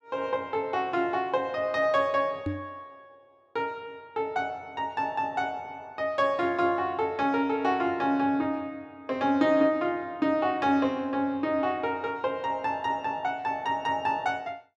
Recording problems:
knock on the microphone; at 2.5 s; peak 0 dB vs average level

